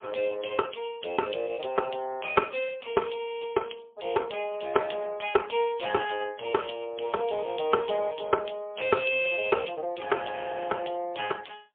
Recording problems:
telephone audio; 220 Hz to 3.4 kHz, AMR-NB, then MP3

